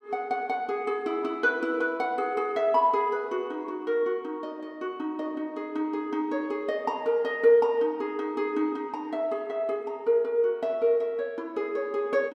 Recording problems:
none

